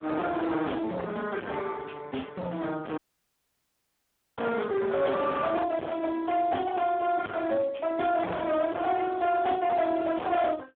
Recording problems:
phone line; 280 Hz to 2.1 kHz, Speex
distorted audio; hard clipping, signal-to-distortion ratio 6 dB
audio cutting out; at 3 s for 1.5 s

